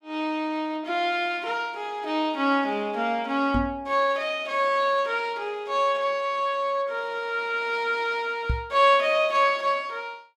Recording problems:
microphone bump; at 3.5 s and at 8.5 s; peak +2 dB vs average level

